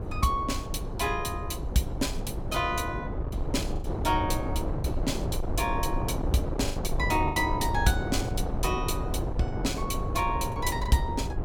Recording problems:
wind noise; below 300 Hz, SNR 2 dB
packet loss; 4% of the sound replaced, filled with the last packet

